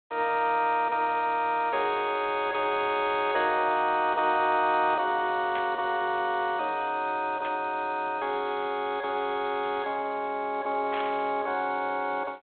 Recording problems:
telephone audio; 320 Hz to 3.7 kHz, G.726
static burst; at 5.5 s, at 7.5 s and at 11 s; peak -6 dB vs average level

